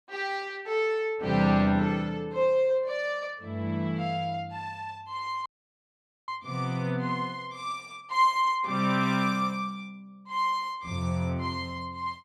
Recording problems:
audio cutting out; at 5.5 s for 1 s

